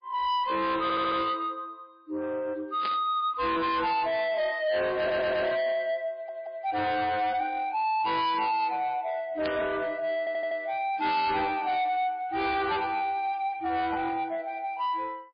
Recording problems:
codec artefacts; MP3, log-spectral distance 2 dB, nothing above 4.4 kHz
distortion; soft clipping, signal-to-distortion ratio 7 dB
audio stuttering; 4 times, first at 1 s
burst of static; at 3 s and at 9.5 s; peak -4 dB vs average level

